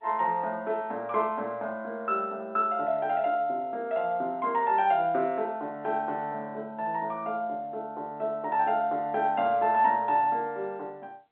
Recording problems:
phone line; 300 Hz to 3.5 kHz, G.711

